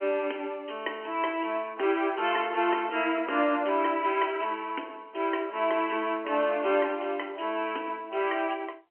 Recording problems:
phone line; 260 Hz to 3.1 kHz, G.711

